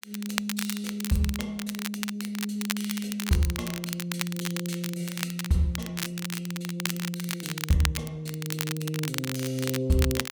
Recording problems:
crackling; vinyl, SNR 4 dB

